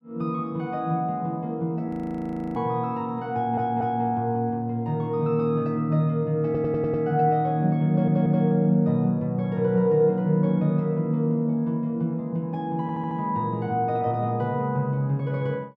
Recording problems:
frozen audio; at 2 s for 0.5 s
audio stuttering; 4 times, first at 3.5 s

